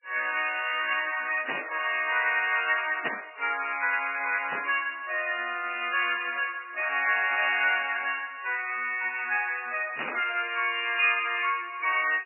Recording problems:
lossy codec; MP3, log-spectral distance 5 dB, nothing above 2.5 kHz
static burst; 4 times, first at 1.5 s; peak -1 dB vs average level

